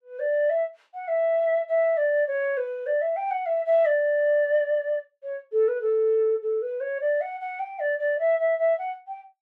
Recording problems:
none

